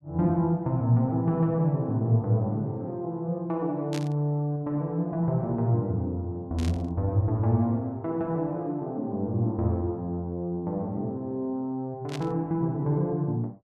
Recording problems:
burst of static; at 4 s, at 6.5 s and at 12 s; peak -7 dB vs average level

